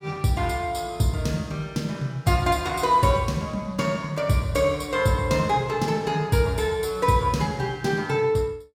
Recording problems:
none

